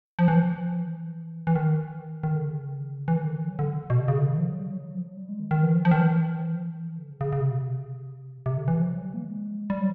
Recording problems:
none

